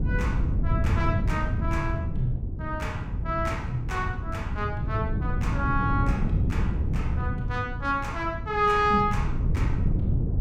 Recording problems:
wind on the microphone; below 150 Hz, SNR -1 dB

